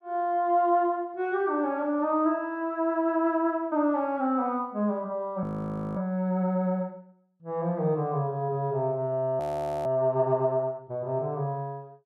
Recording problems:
audio freezing; at 5.5 s for 0.5 s and at 9.5 s

